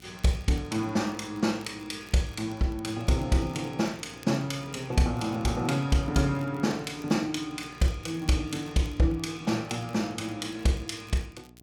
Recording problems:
hum; 60 Hz, harmonics up to 1.1 kHz, SNR 25 dB
crackling; vinyl, SNR 28 dB

